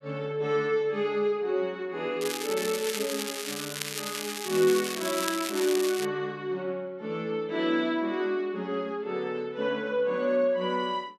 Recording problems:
crackling; from 2 to 6 s; loose cable, SNR 5 dB

